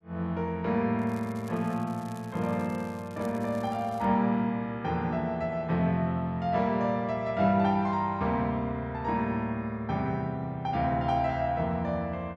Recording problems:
crackling; from 1 to 4 s; loose cable, SNR 26 dB

